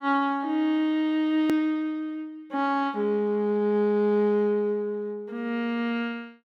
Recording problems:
click at an edit; at 1.5 s

